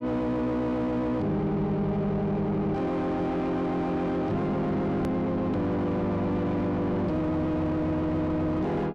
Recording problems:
distortion; soft clipping, signal-to-distortion ratio 7 dB
edit click; at 5 s

